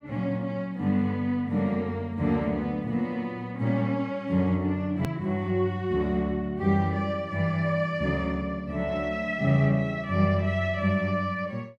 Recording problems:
hard cut with a click; at 5 s

